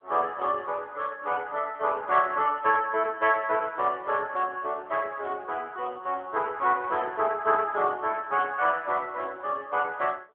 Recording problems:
telephone audio; 300 Hz to 3.3 kHz, AMR-NB

